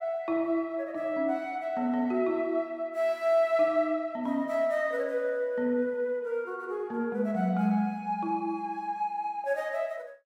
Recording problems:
none

